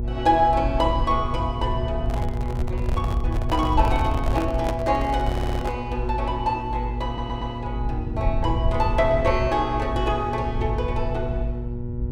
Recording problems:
electrical hum; 60 Hz, harmonics up to 840 Hz, SNR 8 dB
low-frequency rumble; below 82 Hz, SNR 4 dB
handling noise; from 2 to 6 s; peak 0 dB vs average level
stutter; at 5.5 s and at 7 s

